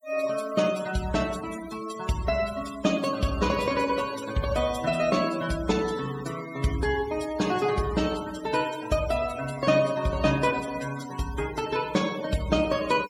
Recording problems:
noise reduction artefacts; signal-to-artefact ratio 14 dB

